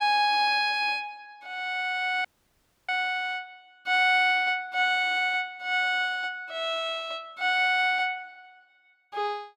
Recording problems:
dropout; at 2.5 s for 0.5 s

